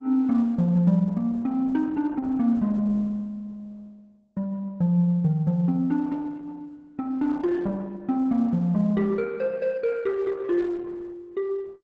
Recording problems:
codec artefacts; Opus, log-spectral distance 2 dB, nothing above 7.3 kHz

